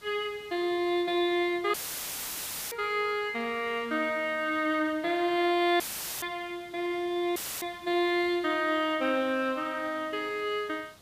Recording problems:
hiss; SNR 25 dB
audio cutting out; at 1.5 s for 1 s, at 6 s and at 7.5 s; filled with static

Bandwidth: 15 kHz